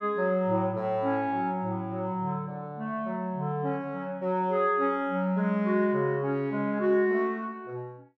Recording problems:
none

